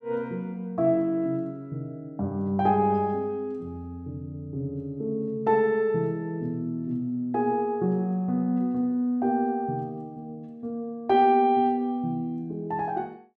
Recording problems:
none

